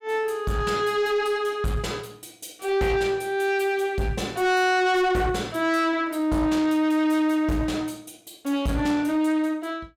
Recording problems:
distortion; soft clipping, signal-to-distortion ratio 8 dB

